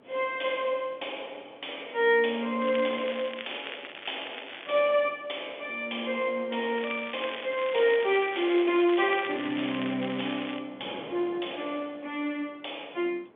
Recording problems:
phone line; 260 Hz to 3.5 kHz, G.711
wind noise; below 830 Hz, SNR 24 dB
crackle; from 2.5 to 4.5 s and from 7 to 11 s; loose cable, SNR 12 dB

